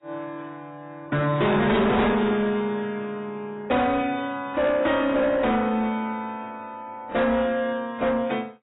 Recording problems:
lossy codec; AAC, log-spectral distance 2 dB, nothing above 3.8 kHz
distorted audio; soft clipping, signal-to-distortion ratio 7 dB

